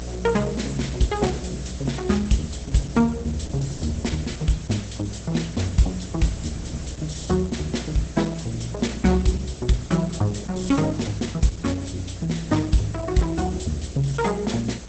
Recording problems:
codec artefacts; Opus, log-spectral distance 10 dB, nothing above 8.2 kHz
mains hum; 60 Hz, harmonics up to 720 Hz, SNR 12 dB
background hiss; slope +2 dB per octave, SNR 18 dB
wind noise; below 260 Hz, SNR 19 dB

